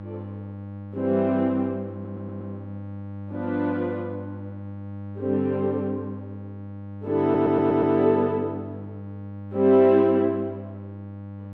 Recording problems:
hum; 50 Hz, harmonics up to 1.1 kHz, SNR 14 dB
stutter; at 2 s and at 7 s

